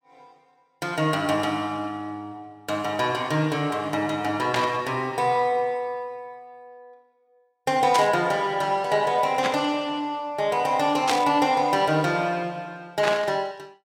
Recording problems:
static burst; 5 times, first at 4.5 s; peak +3 dB vs average level

